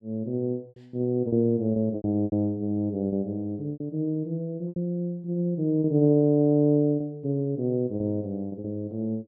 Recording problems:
lost packets; 8% of the sound replaced, filled with repeated pitch periods

